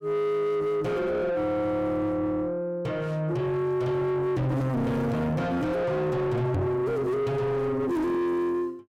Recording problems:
distorted audio; soft clipping, signal-to-distortion ratio 7 dB
microphone bump; at 6.5 s; peak +6 dB vs average level

